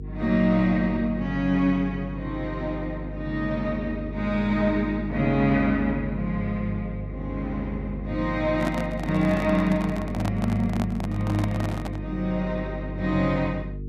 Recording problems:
hum; 50 Hz, harmonics up to 450 Hz, SNR 9 dB
handling noise; from 8.5 to 12 s; peak -2 dB vs average level

